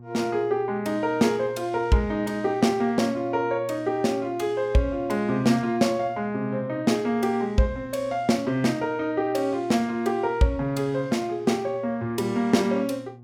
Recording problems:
mains hum; 60 Hz, harmonics up to 840 Hz, SNR 21 dB

